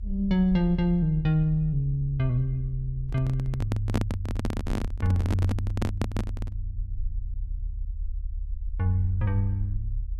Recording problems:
low-frequency rumble; below 50 Hz, strongest tone 38 Hz, SNR 9 dB
handling noise; from 3 to 6.5 s; peak +3 dB vs average level

